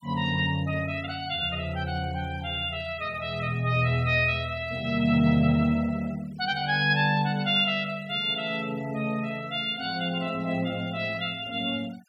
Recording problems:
noise reduction artefacts; signal-to-artefact ratio 24 dB

